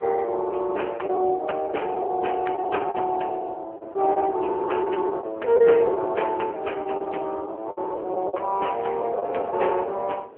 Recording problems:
phone line; 300 Hz to 3.1 kHz, AMR-NB
wind on the microphone; below 680 Hz, SNR 21 dB
lost packets; 11% of the sound replaced, filled with the last packet

